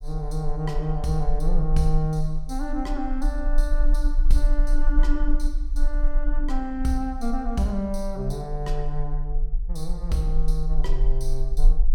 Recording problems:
low-frequency rumble; below 34 Hz, strongest tone 22 Hz, SNR -1 dB

